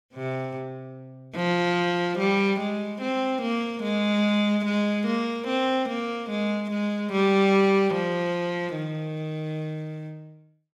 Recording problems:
none

